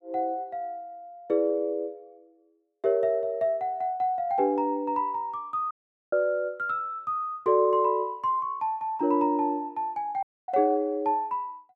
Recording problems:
audio cutting out; at 5.5 s and at 10 s

